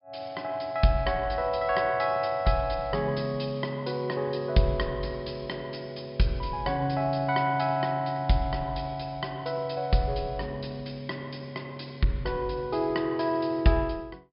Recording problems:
low-pass filter; nothing above 5.5 kHz

